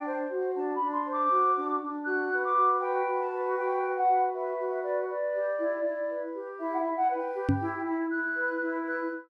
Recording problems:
microphone bump; at 7.5 s; peak +7 dB vs average level

